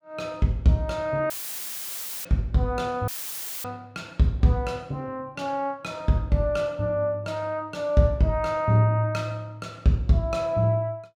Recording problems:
audio cutting out; at 1.5 s for 1 s and at 3 s for 0.5 s; filled with static

